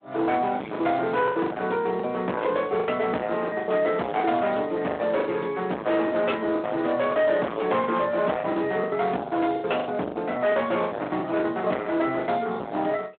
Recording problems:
telephone audio; 280 Hz to 3.5 kHz, Speex
distorted audio; hard clipping, signal-to-distortion ratio 5 dB
packet loss; 14% of the sound replaced, filled with the last packet

